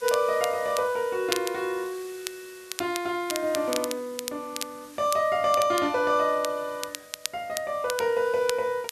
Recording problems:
background hiss; slope +3 dB per octave, SNR 22 dB
crackle; vinyl, SNR 10 dB

